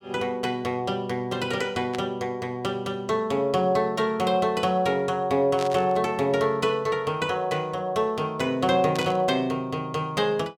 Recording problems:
static burst; at 2 s, at 5.5 s and at 9 s; peak -5 dB vs average level

